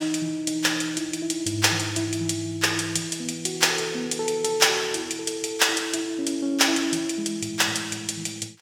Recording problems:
none

